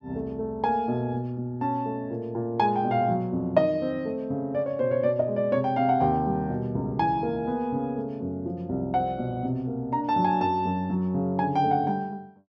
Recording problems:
none

